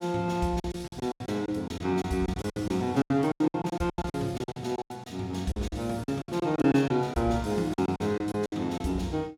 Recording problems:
lost packets; 17% of the sound replaced, filled with silence

